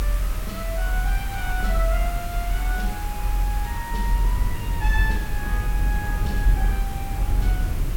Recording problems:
background hiss; SNR 6 dB
low-frequency rumble; below 52 Hz, strongest tone 44 Hz, SNR -7 dB

